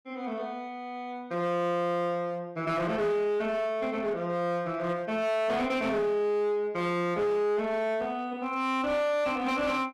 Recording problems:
distorted audio; hard clipping, uneven, signal-to-distortion ratio 11 dB

